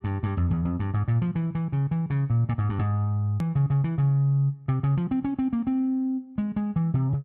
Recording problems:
click at an edit; at 3.5 s

